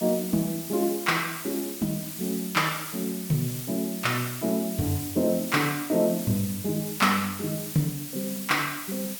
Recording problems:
hiss; slope +1 dB per octave, SNR 8 dB

